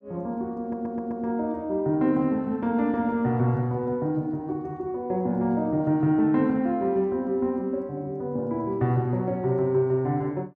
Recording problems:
stutter; at 0.5 s

